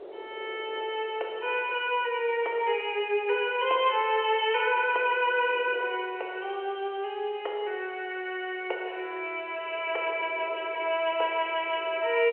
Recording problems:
phone line; 340 Hz to 3.2 kHz, G.711
wind on the microphone; below 580 Hz, SNR 20 dB

